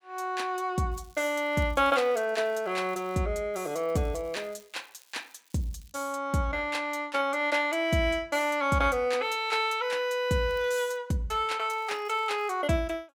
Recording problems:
crackling; 4 times, first at 1 s; loose cable, SNR 29 dB

